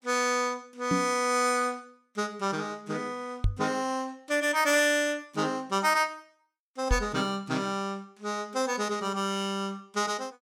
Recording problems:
microphone bump; at 1 s, at 3.5 s and at 7 s; peak +4 dB vs average level

